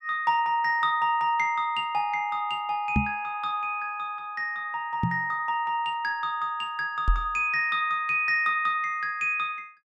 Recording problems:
microphone thump; at 3 s, at 5 s and at 7 s; peak +5 dB vs average level

